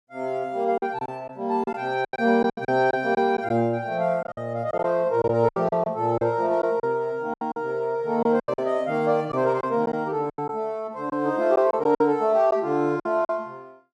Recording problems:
packet loss; 10% of the sound replaced, filled with silence

